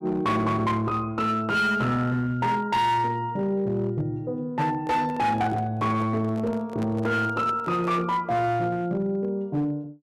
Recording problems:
distorted audio; hard clipping, signal-to-distortion ratio 12 dB
microphone handling noise; from 4.5 to 8 s; peak -7 dB vs average level

